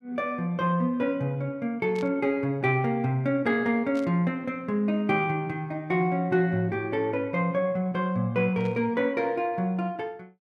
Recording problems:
static burst; at 2 s, at 4 s and at 8.5 s; peak -15 dB vs average level

